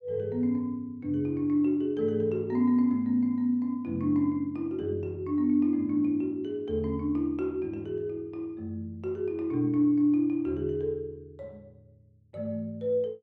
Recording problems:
none

